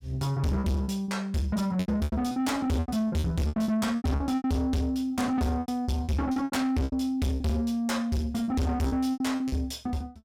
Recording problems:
distorted audio; soft clipping, signal-to-distortion ratio 6 dB
lost packets; 14% of the sound replaced, filled with repeated pitch periods

